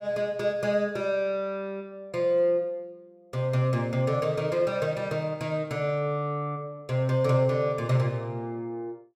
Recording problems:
none

